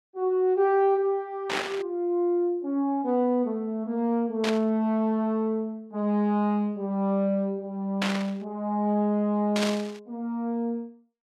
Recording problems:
burst of static; 4 times, first at 1.5 s; peak +2 dB vs average level

